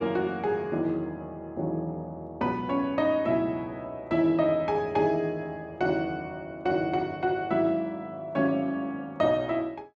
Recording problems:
none

